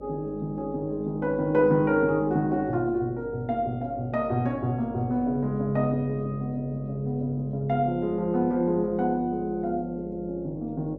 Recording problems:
hum; 50 Hz, harmonics up to 600 Hz, SNR 17 dB

